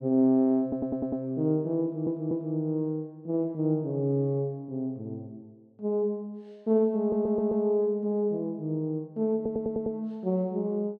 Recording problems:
audio stuttering; 4 times, first at 0.5 s

